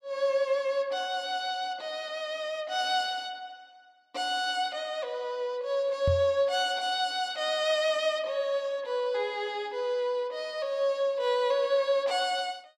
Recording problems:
microphone bump; at 6 s; peak +3 dB vs average level

